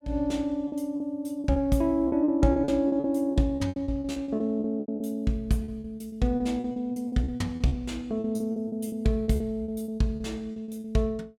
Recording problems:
lost packets; 18% of the sound replaced, filled with repeated pitch periods

